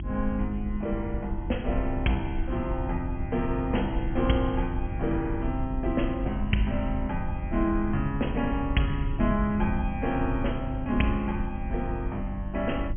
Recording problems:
treble cut off; nothing above 3.3 kHz
hum; 50 Hz, harmonics up to 350 Hz, SNR 8 dB
rumble; below 66 Hz, SNR 7 dB

